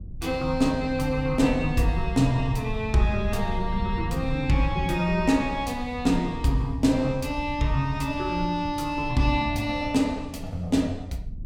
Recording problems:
rumble; below 92 Hz, SNR 11 dB

